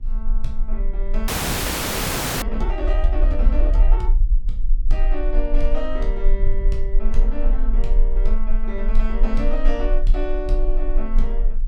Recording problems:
low-frequency rumble; below 34 Hz, strongest tone 20 Hz, SNR -6 dB
wind on the microphone; below 86 Hz, SNR 9 dB
audio freezing; at 1.5 s for 1 s

